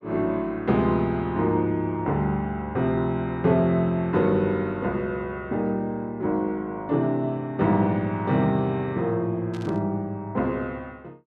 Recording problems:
burst of static; at 9.5 s; peak -16 dB vs average level

